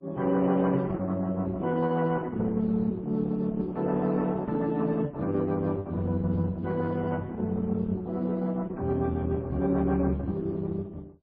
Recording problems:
codec artefacts; Opus, then MP3, log-spectral distance 3 dB, nothing above 10.7 kHz

